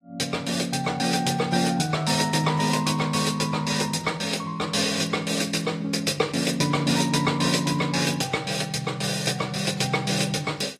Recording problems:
lossy compression; AAC, log-spectral distance 4 dB, nothing above 13.1 kHz

